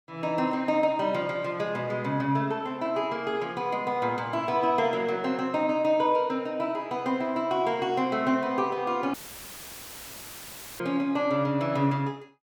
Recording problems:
dropout; at 9 s for 1.5 s; filled with static

